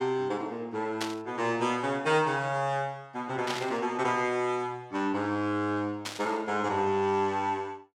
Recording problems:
static burst; at 1 s, at 3.5 s and at 6 s; peak +1 dB vs average level

